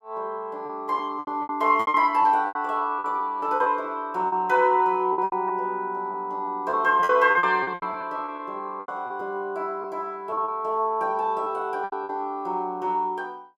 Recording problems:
lost packets; 12% of the sound replaced, filled with repeated pitch periods

